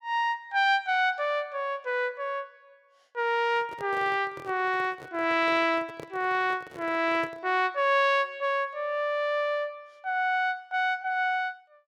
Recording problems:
handling noise; from 3.5 to 7.5 s; peak -10 dB vs average level

